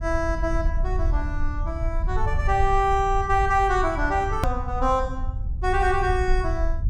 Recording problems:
rumble; below 70 Hz, SNR 4 dB
hard cut with a click; at 4.5 s

